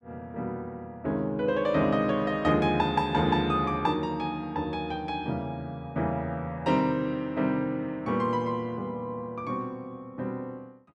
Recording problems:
none

